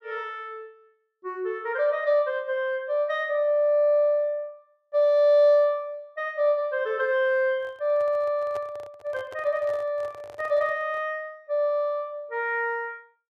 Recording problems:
microphone handling noise; from 7.5 to 11 s; peak -12 dB vs average level

